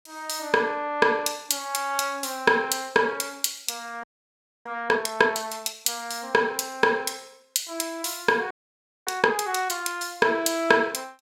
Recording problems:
audio freezing; at 4 s for 0.5 s and at 8.5 s for 0.5 s

